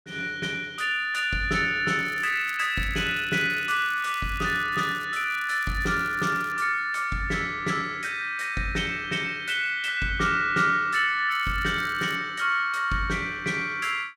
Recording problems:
crackle; from 2 to 5 s, from 5 to 6.5 s and at 11 s; loose cable, SNR 23 dB

